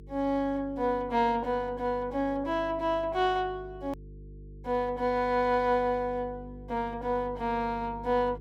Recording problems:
electrical hum; 50 Hz, harmonics up to 450 Hz, SNR 18 dB
hard cut with a click; at 4 s

